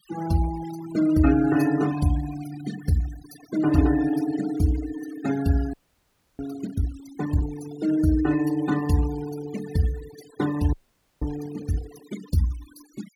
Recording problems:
noise reduction artefacts; signal-to-artefact ratio 14 dB
frozen audio; at 5.5 s for 0.5 s and at 11 s

